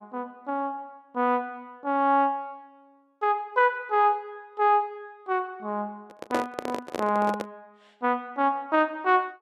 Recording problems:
handling noise; from 6 to 7.5 s; peak +2 dB vs average level

